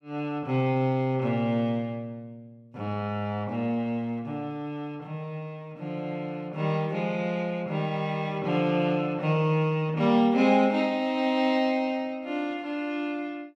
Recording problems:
none

